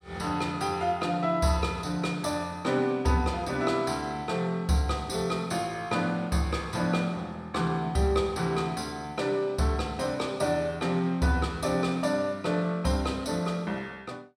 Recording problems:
none

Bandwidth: 16 kHz